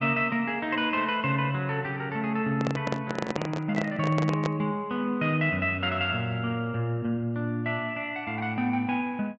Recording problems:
treble missing; nothing above 8 kHz
microphone handling noise; from 2.5 to 4.5 s; peak +1 dB vs average level

